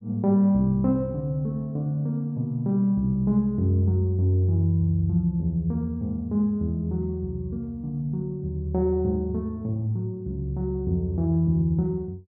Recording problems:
none

